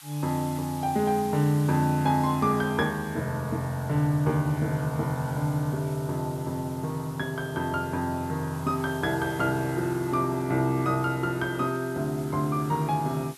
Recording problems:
hiss; SNR 19 dB

